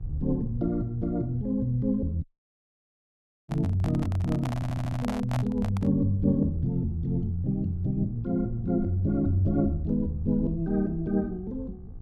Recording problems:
hum; 60 Hz, harmonics up to 1.3 kHz, SNR 29 dB
rumble; below 90 Hz, SNR 13 dB
dropout; at 2 s for 1 s
handling noise; from 3.5 to 6 s; peak -3 dB vs average level
stutter; at 4.5 s

